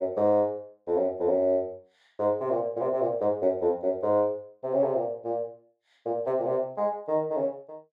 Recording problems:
none

